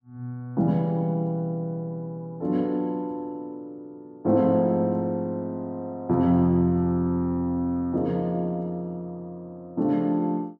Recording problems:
none

